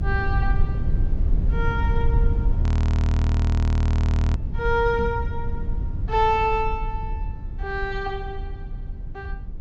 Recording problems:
low-pass filter; nothing above 8 kHz
low-frequency rumble; below 82 Hz, SNR -1 dB
frozen audio; at 2.5 s for 1.5 s
knock on the microphone; at 5 s; peak -2 dB vs average level

